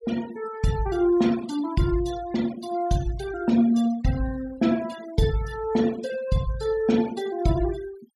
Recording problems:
denoising artefacts; signal-to-artefact ratio 18 dB

